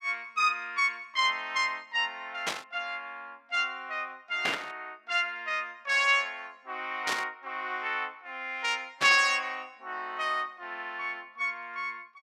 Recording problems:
burst of static; 4 times, first at 2.5 s; peak +3 dB vs average level

